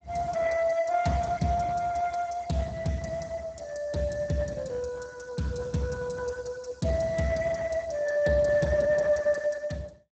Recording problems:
lossy compression; Speex, log-spectral distance 4 dB, nothing above 7.8 kHz

